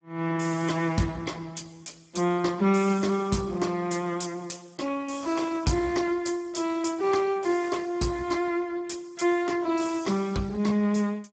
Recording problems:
lossy codec; Speex, log-spectral distance 5 dB, nothing above 7.8 kHz

